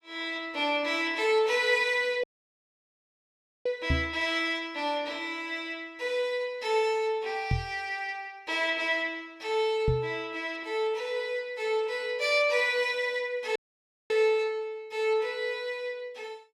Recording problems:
dropout; at 2 s for 1.5 s and at 14 s for 0.5 s
knock on the microphone; at 4 s, at 7.5 s and at 10 s; peak +4 dB vs average level

